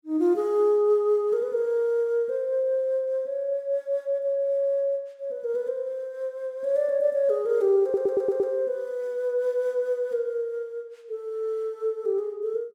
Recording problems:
stutter; at 8 s

